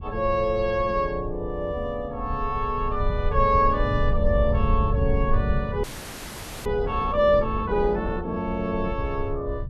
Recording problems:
low-frequency rumble; below 84 Hz, SNR 5 dB
audio freezing; at 6 s for 1 s

